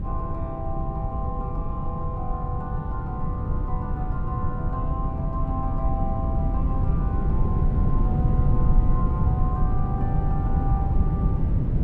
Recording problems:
wind noise; below 140 Hz, SNR -9 dB

